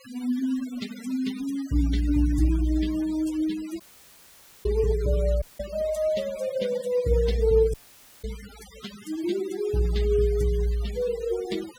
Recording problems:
denoising artefacts; signal-to-artefact ratio 18 dB
audio cutting out; at 4 s for 1 s, at 5.5 s and at 7.5 s

